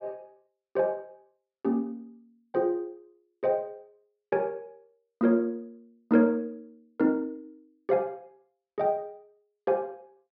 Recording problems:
treble cut off; nothing above 5.4 kHz

